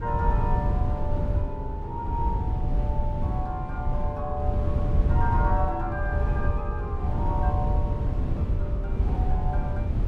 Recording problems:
wind on the microphone; below 100 Hz, SNR -6 dB

